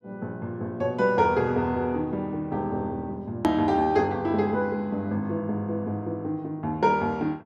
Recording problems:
edit click; at 3.5 s

